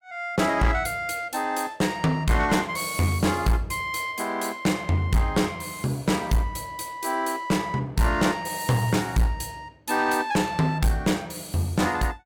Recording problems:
distortion; hard clipping, uneven, signal-to-distortion ratio 10 dB

